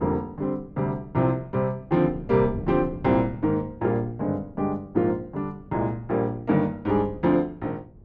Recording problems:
wind noise; below 260 Hz, SNR 18 dB

